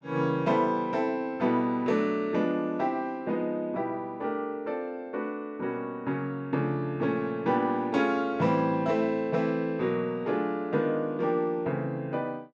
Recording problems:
none

